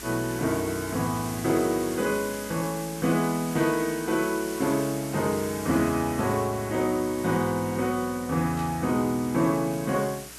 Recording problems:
hum; 60 Hz, harmonics up to 420 Hz, SNR 23 dB
background hiss; slope 0 dB per octave, SNR 13 dB
burst of static; at 3.5 s and at 8.5 s; peak -13 dB vs average level

